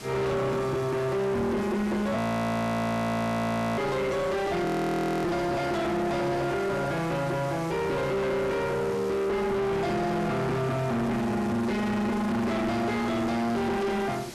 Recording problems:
distortion; soft clipping, signal-to-distortion ratio 5 dB
background hiss; slope -3 dB per octave, SNR 16 dB
frozen audio; at 2 s for 1.5 s and at 4.5 s for 0.5 s
microphone handling noise; from 5.5 to 7 s; peak +2 dB vs average level

